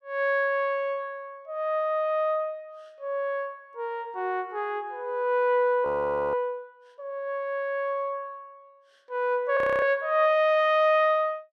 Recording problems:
audio freezing; at 6 s and at 9.5 s

